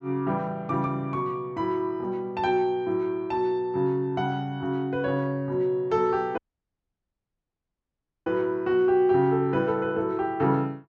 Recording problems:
audio cutting out; at 6.5 s for 2 s

